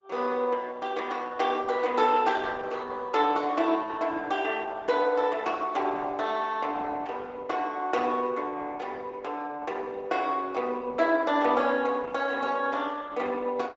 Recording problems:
treble cut off; nothing above 7.5 kHz
codec artefacts; Opus, log-spectral distance 3 dB

